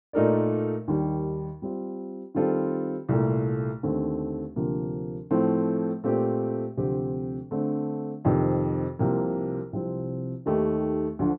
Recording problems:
none

